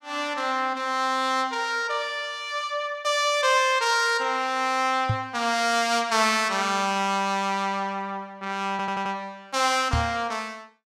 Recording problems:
knock on the microphone; at 5 s and at 10 s; peak +2 dB vs average level
stutter; at 8.5 s

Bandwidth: 16 kHz